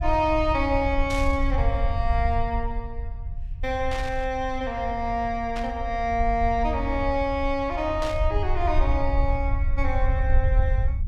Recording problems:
rumble; below 68 Hz, SNR 2 dB
burst of static; 4 times, first at 1 s; peak -5 dB vs average level

